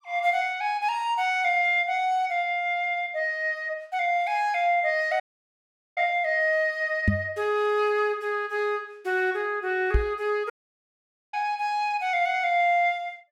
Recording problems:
audio cutting out; at 5 s for 1 s and at 11 s for 1 s
microphone bump; at 7 s and at 10 s; peak +6 dB vs average level

